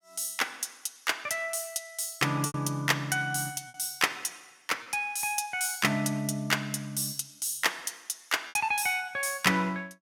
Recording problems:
lost packets; 3% of the sound replaced, filled with repeated pitch periods

